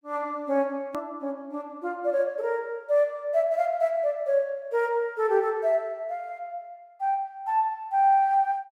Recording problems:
click at an edit; at 1 s

